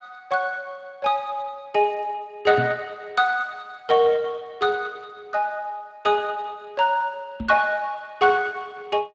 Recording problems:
lossy codec; Speex, log-spectral distance 3 dB
knock on the microphone; at 2.5 s and at 7.5 s; peak 0 dB vs average level

